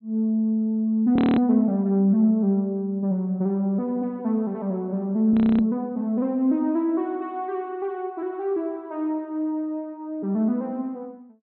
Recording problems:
treble missing; nothing above 4.1 kHz
audio freezing; at 1 s and at 5.5 s

